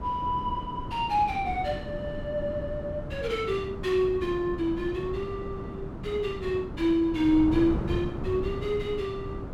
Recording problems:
wind on the microphone; below 310 Hz, SNR 8 dB

